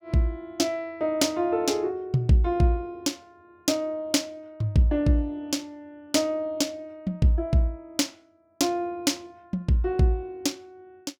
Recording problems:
none

